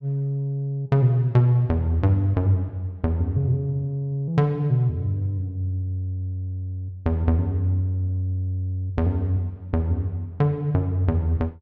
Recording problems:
none

